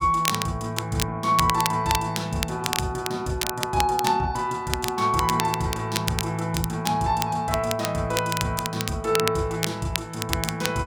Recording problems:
crackle; vinyl, SNR 6 dB

